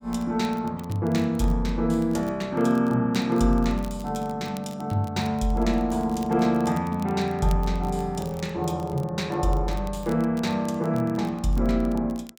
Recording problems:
crackle; vinyl, SNR 25 dB

